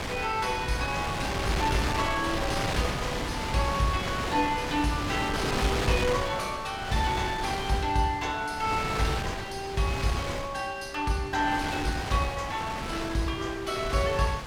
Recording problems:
wind on the microphone; below 2.5 kHz, SNR 3 dB

